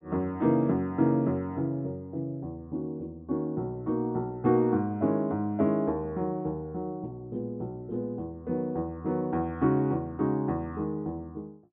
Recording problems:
treble cut off; nothing above 4 kHz

